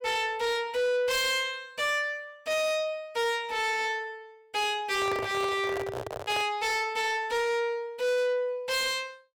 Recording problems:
distorted audio; soft clipping, signal-to-distortion ratio 8 dB
handling noise; from 5 to 6.5 s; peak -2 dB vs average level

